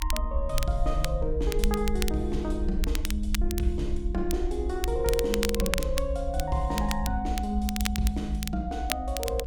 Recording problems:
rumble; below 62 Hz, SNR 2 dB
crackling; vinyl, SNR 6 dB

